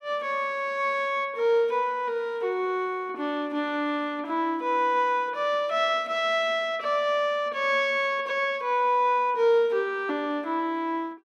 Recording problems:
none

